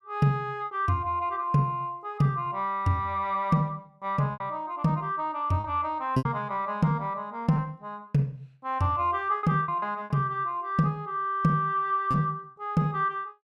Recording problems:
packet loss; 4% of the sound replaced, filled with repeated pitch periods

